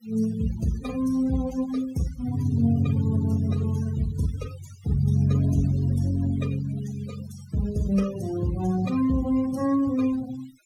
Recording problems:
denoising artefacts; signal-to-artefact ratio 17 dB

